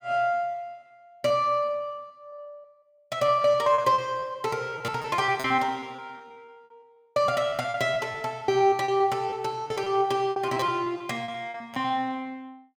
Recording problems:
packet loss; 15% of the sound replaced, filled with repeated pitch periods

